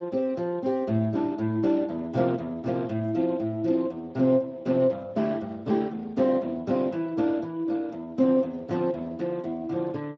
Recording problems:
lossy codec; Speex, log-spectral distance 2 dB

